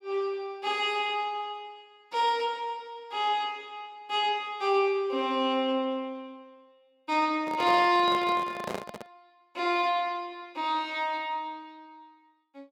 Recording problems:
handling noise; from 7.5 to 9 s; peak -2 dB vs average level

